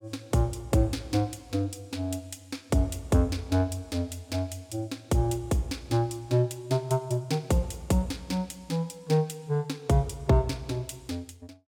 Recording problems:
none

